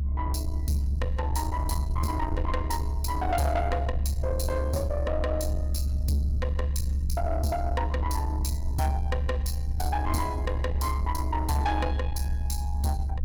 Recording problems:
distorted audio; soft clipping, signal-to-distortion ratio 11 dB
electrical hum; 50 Hz, harmonics up to 600 Hz, SNR 18 dB
low-frequency rumble; below 72 Hz, strongest tone 70 Hz, SNR -1 dB

